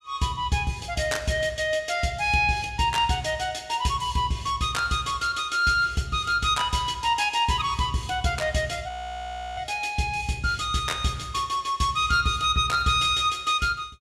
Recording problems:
audio freezing; at 9 s for 0.5 s

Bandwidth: 15 kHz